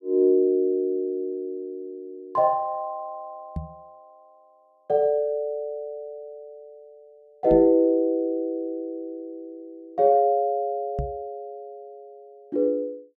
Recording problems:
microphone thump; at 3.5 s, at 7.5 s and at 11 s; peak -2 dB vs average level

